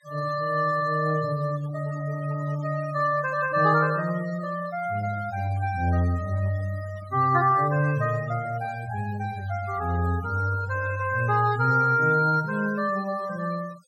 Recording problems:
denoising artefacts; signal-to-artefact ratio 20 dB

